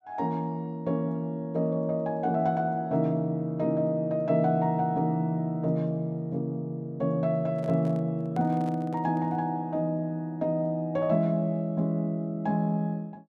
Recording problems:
microphone handling noise; from 7.5 to 9.5 s; peak -10 dB vs average level

